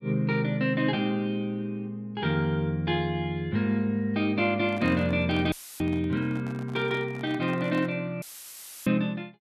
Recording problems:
handling noise; from 4.5 to 8 s; peak -11 dB vs average level
dropout; at 5.5 s and at 8 s for 0.5 s; filled with static

